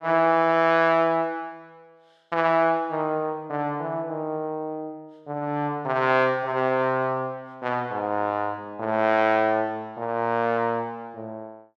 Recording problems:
none

